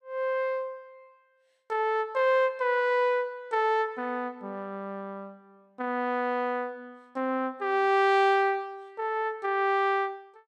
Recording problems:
none

